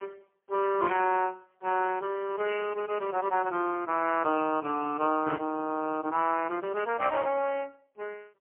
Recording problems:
telephone audio; 260 Hz to 2.8 kHz, AMR-NB, then MP3

